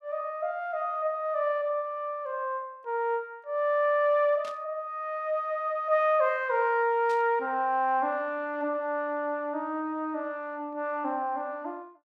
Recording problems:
static burst; at 4.5 s and at 7 s; peak -13 dB vs average level

